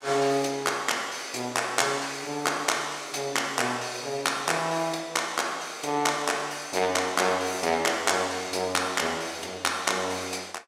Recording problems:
none

